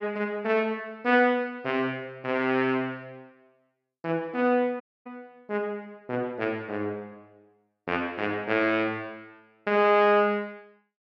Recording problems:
audio cutting out; at 5 s

